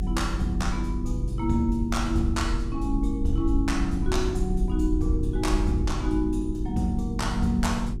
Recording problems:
electrical hum; 50 Hz, harmonics up to 400 Hz, SNR 7 dB
rumble; below 54 Hz, SNR 5 dB

